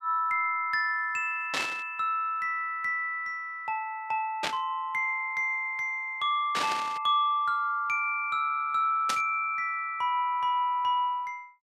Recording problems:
burst of static; 4 times, first at 1.5 s; peak +2 dB vs average level

